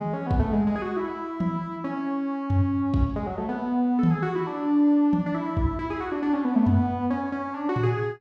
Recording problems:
none

